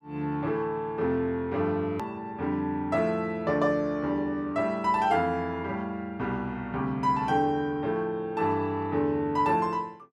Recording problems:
hard cut with a click; at 2 s

